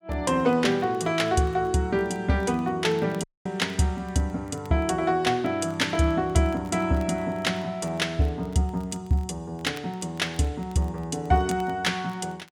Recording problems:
crackle; vinyl, SNR 29 dB
audio cutting out; at 3 s

